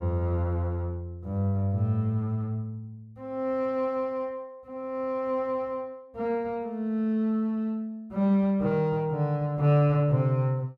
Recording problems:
none

